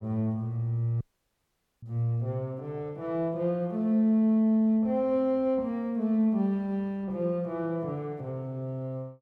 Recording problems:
audio cutting out; at 1 s for 1 s

